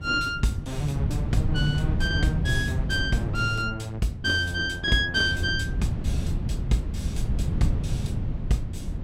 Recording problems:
wind noise; below 150 Hz, SNR 3 dB

